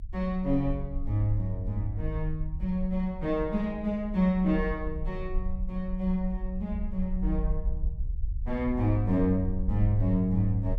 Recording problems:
low-frequency rumble; below 56 Hz, SNR 7 dB

